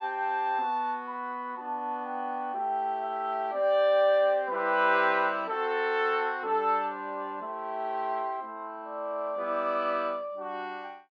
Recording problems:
none

